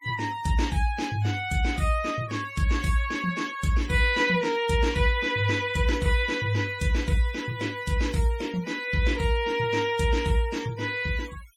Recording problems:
noise reduction artefacts; signal-to-artefact ratio 19 dB

